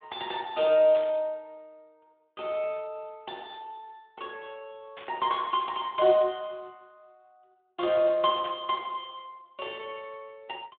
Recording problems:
phone line; 240 Hz to 3.7 kHz, Speex
static burst; at 1 s, at 5 s and at 8.5 s; peak -10 dB vs average level

